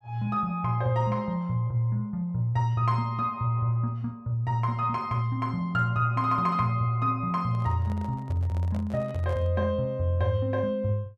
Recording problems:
microphone handling noise; from 7.5 to 9.5 s; peak -11 dB vs average level

